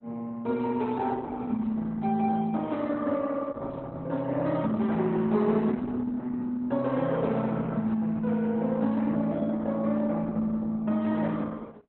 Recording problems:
lossy compression; Opus, log-spectral distance 3 dB, nothing above 3.9 kHz

